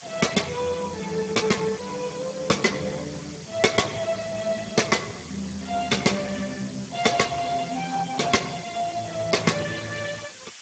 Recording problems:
lossy compression; Speex, log-spectral distance 12 dB, nothing above 7.6 kHz
background hiss; slope +3 dB per octave, SNR 16 dB

